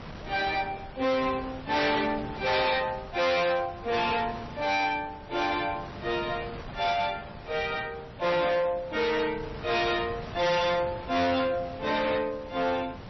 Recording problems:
codec artefacts; MP3, log-spectral distance 4 dB, nothing above 5.8 kHz
distorted audio; hard clipping, uneven, signal-to-distortion ratio 6 dB
wind noise; below 1.3 kHz, SNR 14 dB

